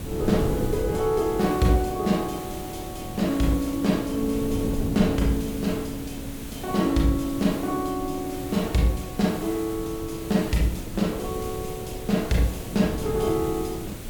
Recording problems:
background hiss; slope -2 dB per octave, SNR 15 dB
wind on the microphone; below 280 Hz, SNR 9 dB

